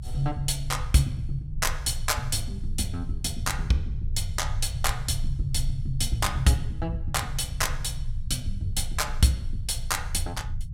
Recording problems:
rumble; below 88 Hz, strongest tone 22 Hz, SNR 6 dB

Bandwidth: 16.5 kHz